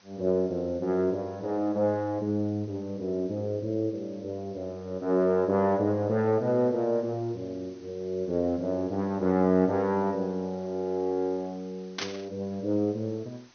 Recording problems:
treble missing; nothing above 6.3 kHz
background hiss; slope -1 dB per octave, SNR 29 dB
burst of static; at 12 s; peak 0 dB vs average level

